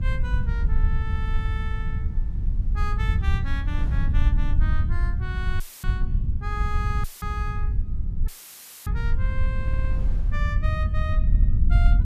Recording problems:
hum; 60 Hz, harmonics up to 1.3 kHz, SNR 20 dB
rumble; below 74 Hz, SNR -10 dB
wind noise; below 480 Hz, SNR 17 dB
audio cutting out; at 5.5 s, at 7 s and at 8.5 s for 0.5 s; filled with static
stutter; at 9.5 s and at 11 s

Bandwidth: 14.5 kHz